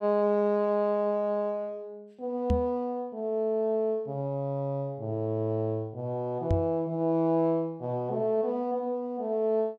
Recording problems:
knock on the microphone; at 2.5 s and at 6.5 s; peak +5 dB vs average level

